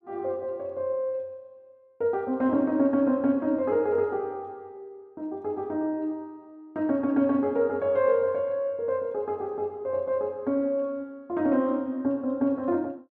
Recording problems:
none

